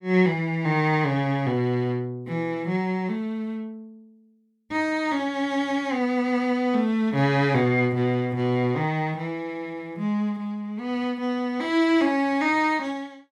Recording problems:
none

